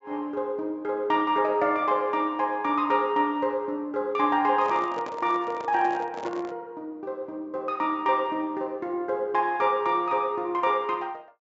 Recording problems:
low-pass filter; nothing above 8 kHz
microphone handling noise; from 4.5 to 6.5 s; peak -7 dB vs average level

